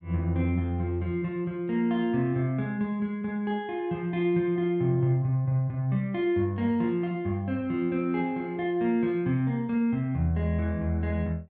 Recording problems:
none

